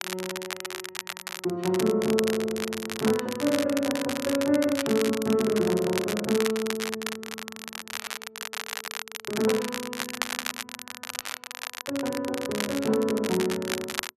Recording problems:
crackling; vinyl, SNR 7 dB

